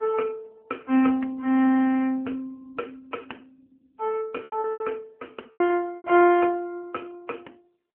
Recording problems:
phone line; 220 Hz to 2.4 kHz, AMR-NB
packet loss; 5% of the sound replaced, filled with repeated pitch periods

